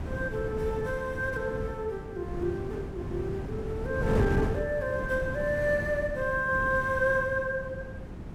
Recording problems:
wind noise; below 280 Hz, SNR 5 dB

